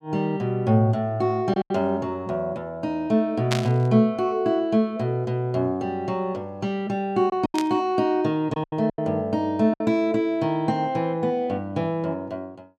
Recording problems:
packet loss; 3% of the sound replaced, filled with silence
static burst; at 3.5 s and at 7.5 s; peak +2 dB vs average level

